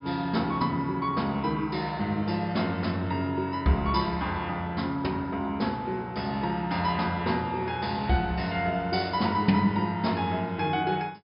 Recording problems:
treble cut off; nothing above 5.5 kHz

